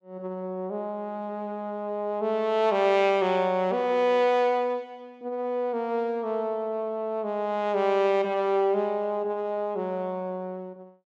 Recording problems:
none

